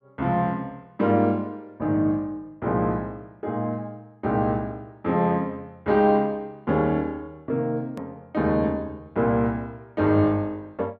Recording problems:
edit click; at 8 s

